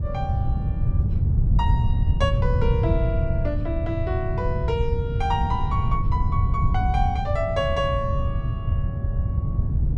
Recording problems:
wind on the microphone; below 120 Hz, SNR -4 dB

